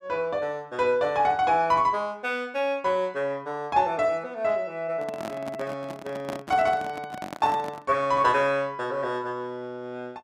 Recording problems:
handling noise; from 5 to 8 s; peak -5 dB vs average level

